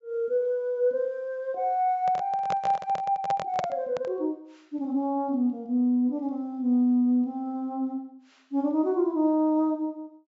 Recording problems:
treble cut off; nothing above 8 kHz
microphone handling noise; from 2 to 4 s; peak 0 dB vs average level

